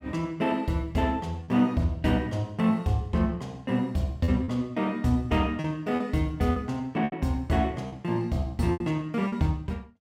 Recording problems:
lost packets; 5% of the sound replaced, filled with repeated pitch periods

